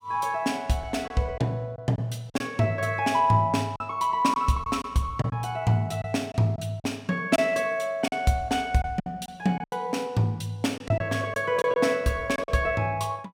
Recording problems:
packet loss; 6% of the sound replaced, filled with silence

